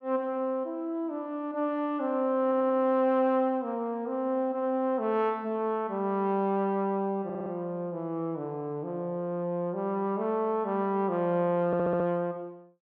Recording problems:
stutter; at 2.5 s, at 7 s and at 12 s

